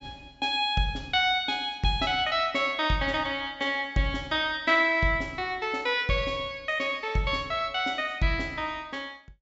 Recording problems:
low-pass filter; nothing above 8 kHz

